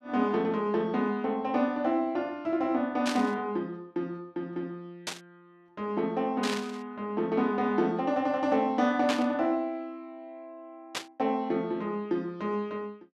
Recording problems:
static burst; 5 times, first at 3 s; peak +2 dB vs average level

